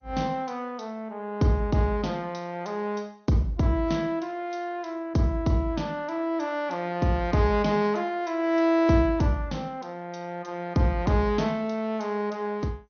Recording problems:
lossy compression; MP2, then MP3, log-spectral distance 3 dB, nothing above 6.3 kHz

